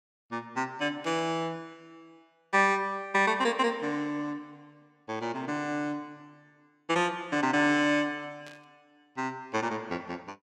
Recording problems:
burst of static; at 1 s and at 8.5 s; peak -14 dB vs average level

